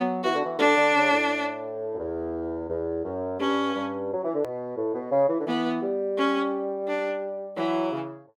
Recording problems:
click at an edit; at 4.5 s

